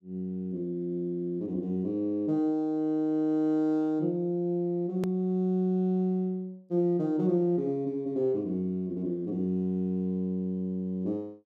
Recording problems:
click at an edit; at 5 s

